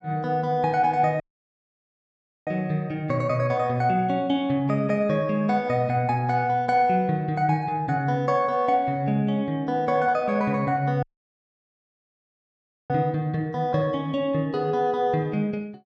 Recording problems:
audio cutting out; at 1 s for 1.5 s and at 11 s for 2 s

